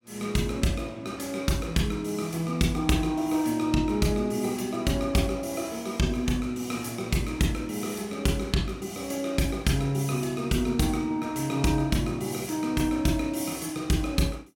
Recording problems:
none

